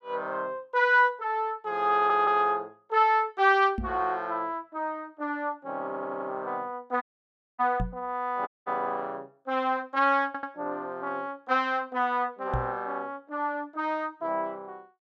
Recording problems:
audio stuttering; at 2 s, at 6 s and at 10 s
microphone bump; at 4 s, at 8 s and at 13 s; peak 0 dB vs average level
dropout; at 7 s for 0.5 s and at 8.5 s

